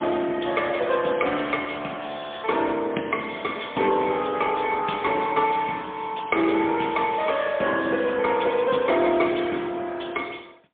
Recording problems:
phone line; 220 Hz to 3.4 kHz, AMR-NB, then MP3

